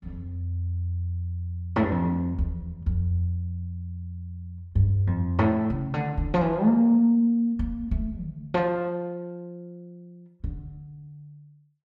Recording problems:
none

